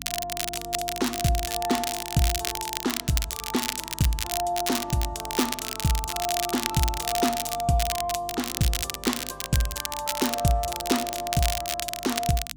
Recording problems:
electrical hum; 50 Hz, harmonics up to 300 Hz, SNR 21 dB
crackle; vinyl, SNR 2 dB

